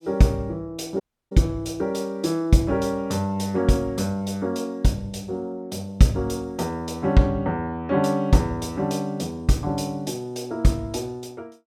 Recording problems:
audio cutting out; at 1 s

